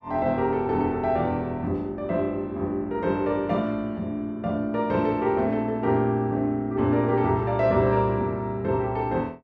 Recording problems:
none

